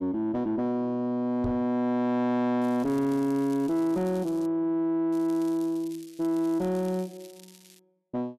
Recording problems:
distorted audio; soft clipping, signal-to-distortion ratio 11 dB
knock on the microphone; at 1.5 s; peak -1 dB vs average level
crackle; from 2.5 to 4.5 s, at 5 s and from 6 to 8 s; loose cable, SNR 25 dB

